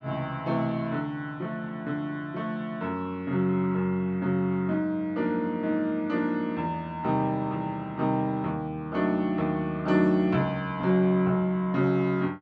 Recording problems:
none

